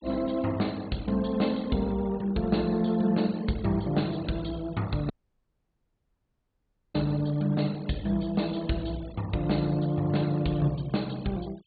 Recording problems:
low-pass filter; nothing above 4.5 kHz
noise reduction artefacts; signal-to-artefact ratio 22 dB
audio cutting out; at 5 s for 2 s

